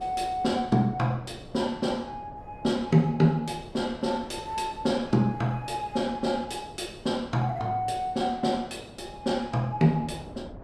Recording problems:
wind on the microphone; below 570 Hz, SNR 19 dB

